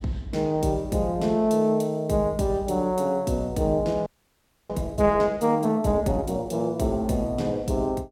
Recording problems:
frozen audio; at 4 s for 0.5 s

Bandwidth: 17 kHz